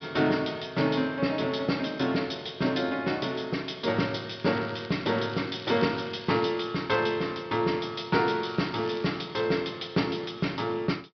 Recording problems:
treble cut off; nothing above 5.5 kHz
crackling; from 4.5 to 6.5 s and at 8.5 s; loose cable, SNR 20 dB

